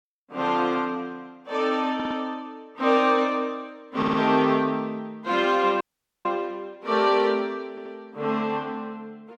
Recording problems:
stutter; at 2 s, at 4 s and at 7.5 s
dropout; at 6 s

